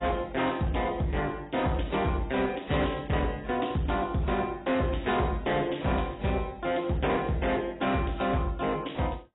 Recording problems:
codec artefacts; AAC, log-spectral distance 5 dB, nothing above 3.8 kHz
distorted audio; hard clipping, uneven, signal-to-distortion ratio 11 dB

